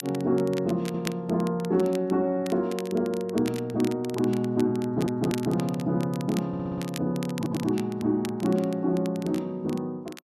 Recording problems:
crackling; vinyl, SNR 17 dB
stutter; 4 times, first at 1 s

